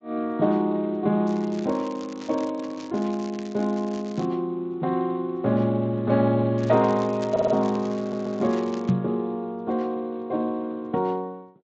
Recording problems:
codec artefacts; Speex, log-spectral distance 3 dB
crackle; from 1.5 to 4.5 s and from 6.5 to 9 s; loose cable, SNR 21 dB
audio stuttering; at 7.5 s and at 8 s
microphone bump; at 9 s; peak +5 dB vs average level

